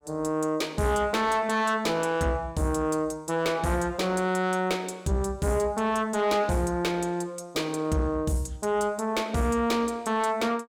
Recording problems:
distorted audio; soft clipping, signal-to-distortion ratio 10 dB

